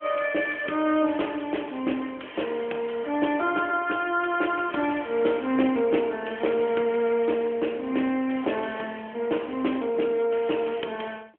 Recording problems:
phone line; 260 Hz to 3.3 kHz, AMR-NB

